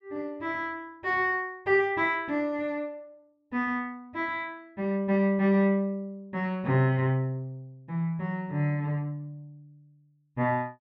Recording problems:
none

